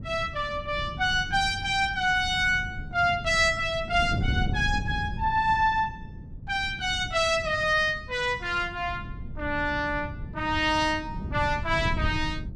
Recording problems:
wind on the microphone; below 150 Hz, SNR 10 dB

